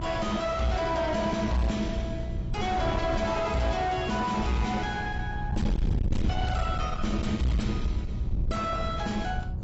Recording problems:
codec artefacts; AAC, log-spectral distance 2 dB, nothing above 7.6 kHz
distortion; soft clipping, signal-to-distortion ratio 5 dB
electrical hum; 60 Hz, harmonics up to 720 Hz, SNR 11 dB
wind noise; below 120 Hz, SNR 4 dB

